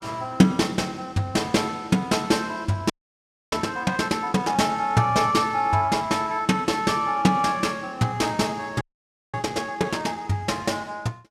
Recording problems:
frozen audio; at 3 s for 0.5 s and at 9 s for 0.5 s

